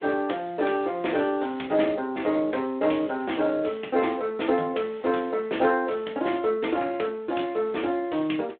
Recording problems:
phone line; 240 Hz to 3.6 kHz, Speex

